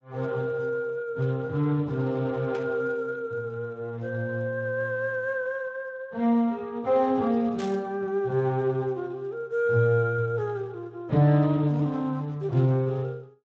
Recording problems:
lossy compression; Speex, log-spectral distance 2 dB
burst of static; at 2.5 s and at 7.5 s; peak -10 dB vs average level

